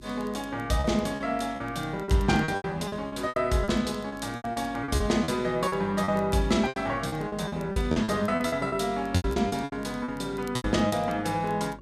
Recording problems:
electrical hum; 50 Hz, harmonics up to 400 Hz, SNR 21 dB
crackling; vinyl, SNR 28 dB
lost packets; 15% of the sound replaced, filled with repeated pitch periods

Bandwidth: 14 kHz